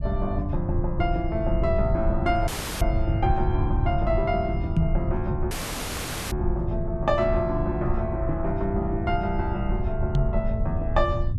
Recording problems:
low-frequency rumble; below 100 Hz, SNR 1 dB
audio cutting out; at 2.5 s and at 5.5 s for 1 s
knock on the microphone; at 5 s and at 10 s; peak +8 dB vs average level

